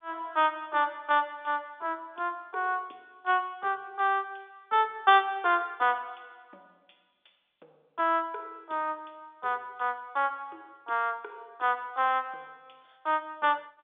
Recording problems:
phone line; 280 Hz to 3.6 kHz, G.711

